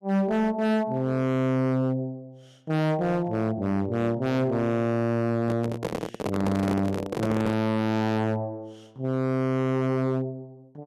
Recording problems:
distortion; hard clipping, signal-to-distortion ratio 7 dB
microphone handling noise; from 5.5 to 7.5 s; peak +1 dB vs average level

